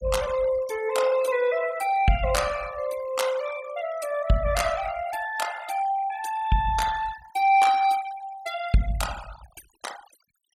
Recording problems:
denoising artefacts; signal-to-artefact ratio 15 dB

